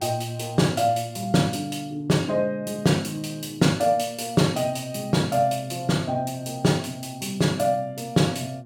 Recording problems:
hum; 60 Hz, harmonics up to 840 Hz, SNR 23 dB

